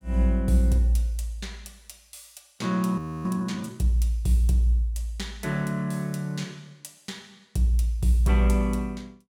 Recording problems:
frozen audio; at 3 s

